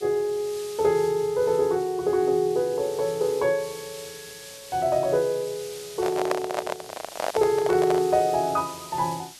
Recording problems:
background hiss; slope +2 dB per octave, SNR 17 dB
microphone handling noise; from 6 to 8 s; peak +3 dB vs average level

